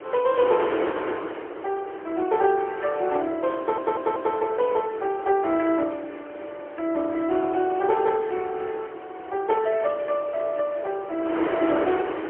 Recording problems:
phone line; 300 Hz to 2.6 kHz, AMR-NB, then MP3
wind noise; below 1.1 kHz, SNR 9 dB
audio stuttering; at 3.5 s

